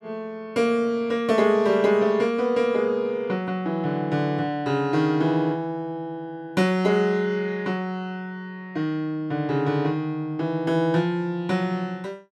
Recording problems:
none

